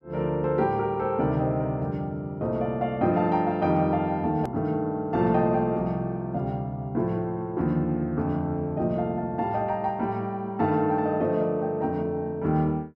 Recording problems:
edit click; at 4.5 s

